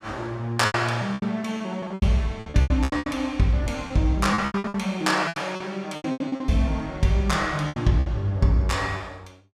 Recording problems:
lost packets; 16% of the sound replaced, filled with repeated pitch periods

